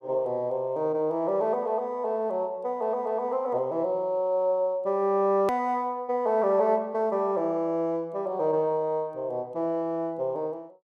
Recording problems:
click at an edit; at 5.5 s

